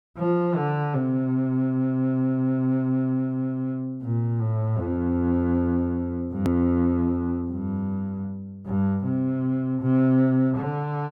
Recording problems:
edit click; at 6.5 s

